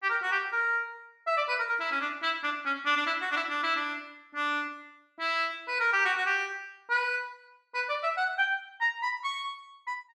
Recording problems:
none

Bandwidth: 13 kHz